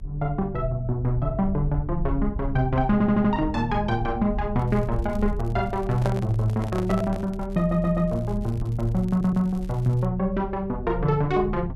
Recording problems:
rumble; below 74 Hz, SNR 10 dB
audio stuttering; at 3 s, at 7.5 s and at 9 s
crackle; from 4.5 to 10 s; loose cable, SNR 30 dB
handling noise; from 6 to 7.5 s; peak -3 dB vs average level

